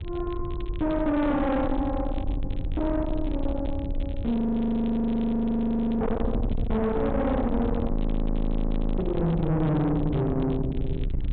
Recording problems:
treble missing; nothing above 4 kHz
distortion; soft clipping, signal-to-distortion ratio 7 dB
low-frequency rumble; below 200 Hz, strongest tone 26 Hz, SNR 5 dB
crackling; vinyl, SNR 27 dB
frozen audio; at 4.5 s for 1.5 s and at 8 s for 1 s

